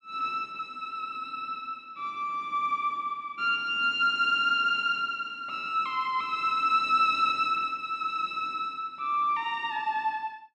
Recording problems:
none

